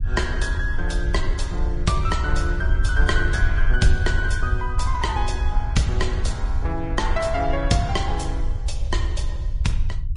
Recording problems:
codec artefacts; Vorbis, then MP3, log-spectral distance 2 dB, nothing above 10.4 kHz
low-frequency rumble; below 66 Hz, SNR 0 dB

